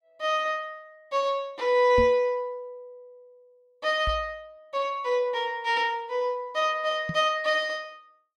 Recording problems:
microphone thump; at 2 s, at 4 s and at 7 s; peak -1 dB vs average level

